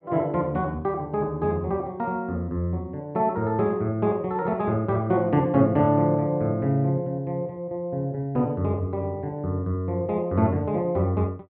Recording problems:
none

